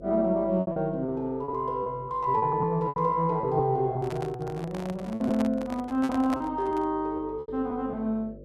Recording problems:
hum; 50 Hz, harmonics up to 600 Hz, SNR 20 dB
lost packets; 10% of the sound replaced, filled with repeated pitch periods
handling noise; from 4 to 7 s; peak -3 dB vs average level

